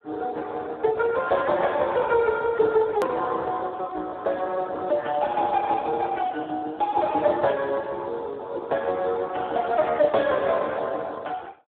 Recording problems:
telephone audio; 320 Hz to 4 kHz, Speex
hard cut with a click; at 3 s

